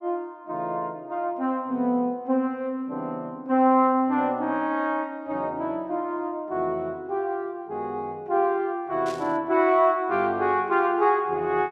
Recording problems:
static burst; at 9 s; peak -12 dB vs average level

